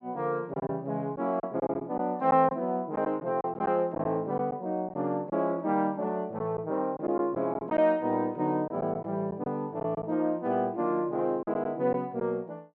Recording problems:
lost packets; 6% of the sound replaced, filled with silence

